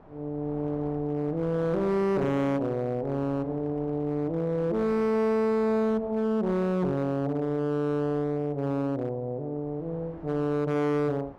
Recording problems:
distortion; hard clipping, signal-to-distortion ratio 10 dB
wind on the microphone; below 860 Hz, SNR 21 dB

